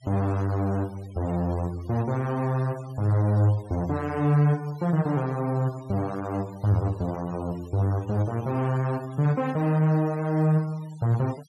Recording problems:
denoising artefacts; signal-to-artefact ratio 23 dB

